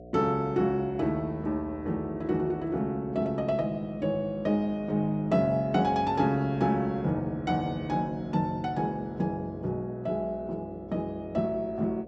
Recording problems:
hum; 60 Hz, harmonics up to 720 Hz, SNR 17 dB

